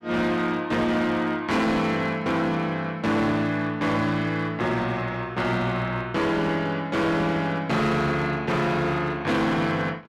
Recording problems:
distorted audio; hard clipping, signal-to-distortion ratio 10 dB

